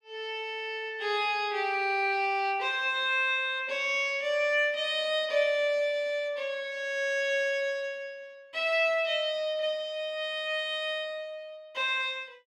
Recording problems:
none

